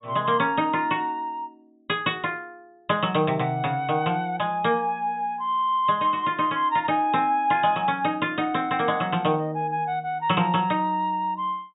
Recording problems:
low-pass filter; nothing above 4 kHz

